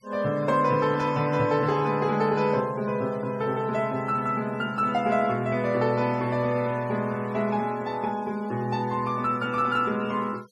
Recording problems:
noise reduction artefacts; signal-to-artefact ratio 24 dB

